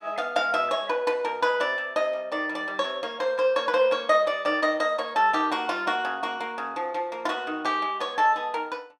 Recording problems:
none

